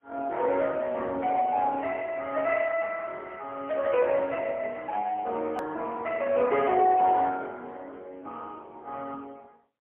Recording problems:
telephone audio; 220 Hz to 2.9 kHz, AMR-NB, then MP3
hard cut with a click; at 5.5 s

